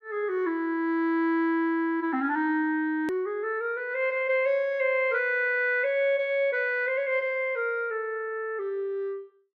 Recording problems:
hard cut with a click; at 3 s

